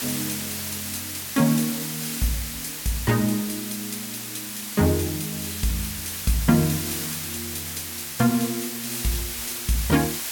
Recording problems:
background hiss; slope +1 dB per octave, SNR 3 dB

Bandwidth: 17 kHz